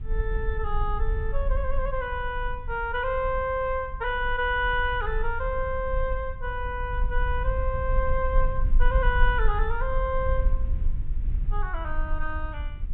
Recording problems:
treble cut off; nothing above 4 kHz
rumble; below 46 Hz, strongest tone 20 Hz, SNR 2 dB

